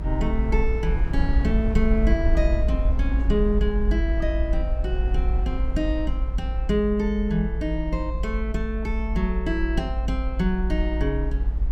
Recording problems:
rumble; below 56 Hz, SNR -1 dB

